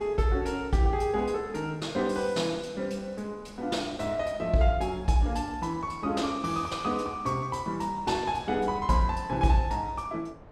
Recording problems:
wind noise; below 710 Hz, SNR 22 dB

